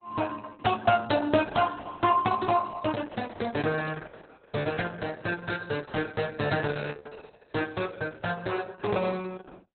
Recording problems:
lossy compression; Opus, log-spectral distance 5 dB, nothing above 4.1 kHz

